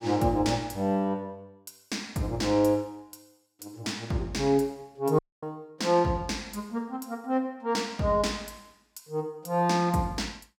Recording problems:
dropout; at 5 s

